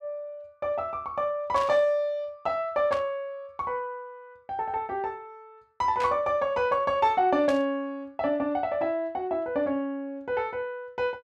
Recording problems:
static burst; 4 times, first at 1.5 s; peak -5 dB vs average level

